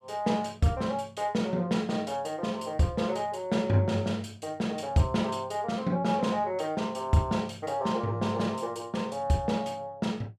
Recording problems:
none

